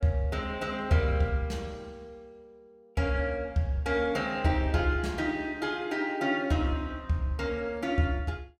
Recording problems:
none

